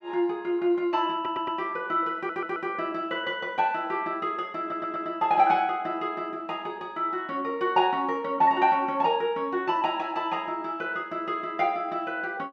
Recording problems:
stutter; at 1 s, at 2 s and at 4.5 s

